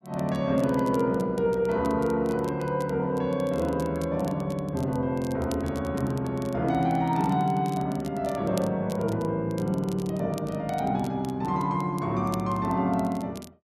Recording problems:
crackle; vinyl, SNR 22 dB

